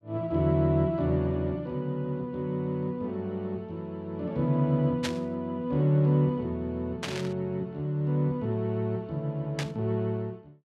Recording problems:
burst of static; at 5 s, at 7 s and at 9.5 s; peak +1 dB vs average level

